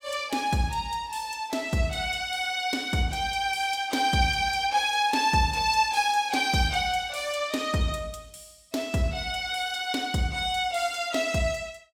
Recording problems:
none

